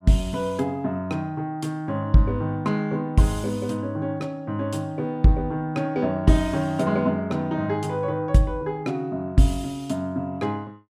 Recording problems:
none

